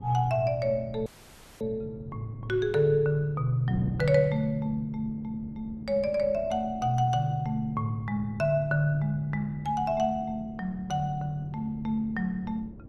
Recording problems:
wind on the microphone; below 250 Hz, SNR 16 dB
audio cutting out; at 1 s for 0.5 s

